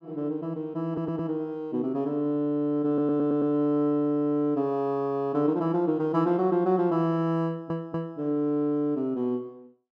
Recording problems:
stutter; at 1 s, at 3 s and at 7.5 s

